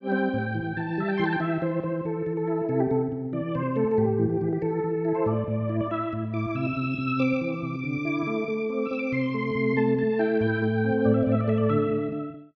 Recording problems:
none

